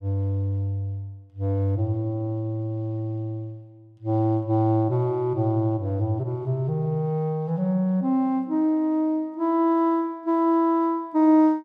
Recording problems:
none

